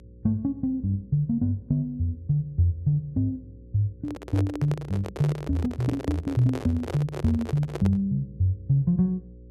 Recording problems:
mains hum; 60 Hz, harmonics up to 540 Hz, SNR 22 dB
handling noise; from 4 to 8 s; peak -3 dB vs average level

